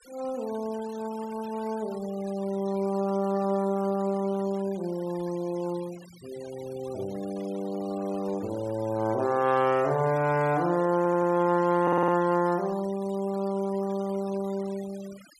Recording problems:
denoising artefacts; signal-to-artefact ratio 21 dB
audio stuttering; at 11 s and at 12 s

